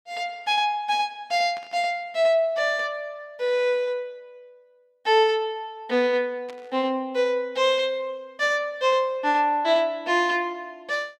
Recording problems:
burst of static; at 1.5 s and at 6.5 s; peak -16 dB vs average level

